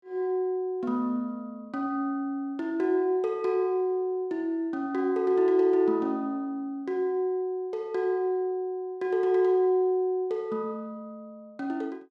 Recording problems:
none

